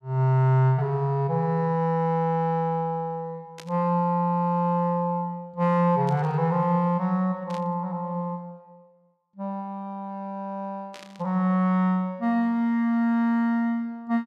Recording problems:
burst of static; 4 times, first at 3.5 s; peak -12 dB vs average level

